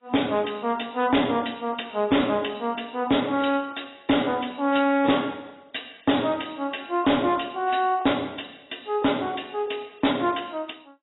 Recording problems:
lossy codec; AAC, log-spectral distance 9 dB, nothing above 3.8 kHz
distortion; hard clipping, signal-to-distortion ratio 11 dB

